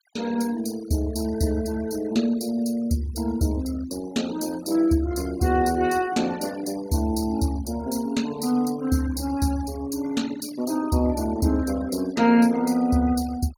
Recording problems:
noise reduction artefacts; signal-to-artefact ratio 18 dB

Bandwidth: 17.5 kHz